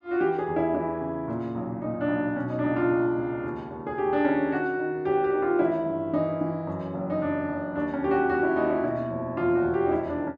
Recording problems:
none

